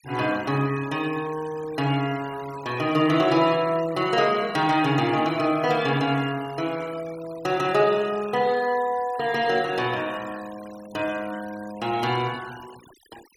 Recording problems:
denoising artefacts; signal-to-artefact ratio 20 dB

